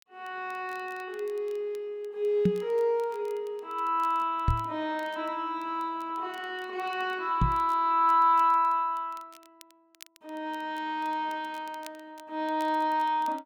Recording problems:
crackle; vinyl, SNR 28 dB
knock on the microphone; at 2.5 s, at 4.5 s and at 7.5 s; peak +7 dB vs average level

